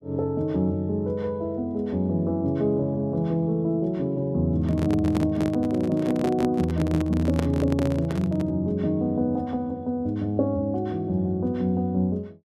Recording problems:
microphone handling noise; from 4.5 to 8.5 s; peak 0 dB vs average level

